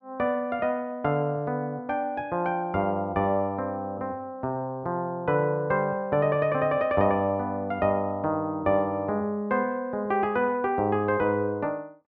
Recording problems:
none

